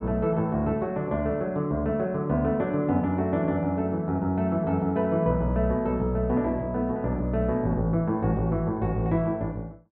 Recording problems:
treble cut off; nothing above 4.1 kHz

